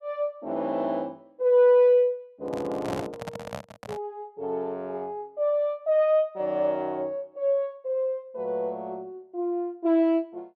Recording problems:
microphone handling noise; from 2.5 to 4 s; peak -4 dB vs average level

